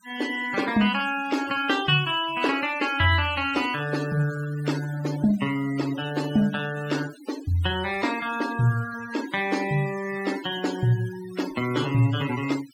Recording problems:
denoising artefacts; signal-to-artefact ratio 14 dB

